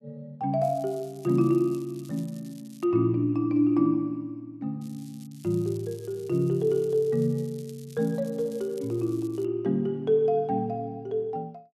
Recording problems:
crackling; from 0.5 to 3 s and from 5 to 9.5 s; loose cable, SNR 26 dB

